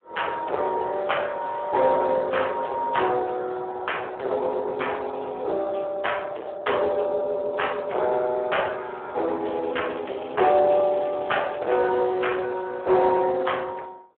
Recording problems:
phone line; 340 Hz to 3.3 kHz, Speex
distortion; hard clipping, signal-to-distortion ratio 10 dB
crackling; from 9.5 to 12 s; loose cable, SNR 21 dB

